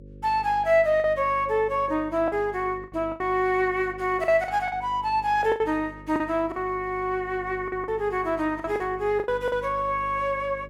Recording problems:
hum; 50 Hz, harmonics up to 550 Hz, SNR 20 dB
packet loss; 8% of the sound replaced, filled with the last packet

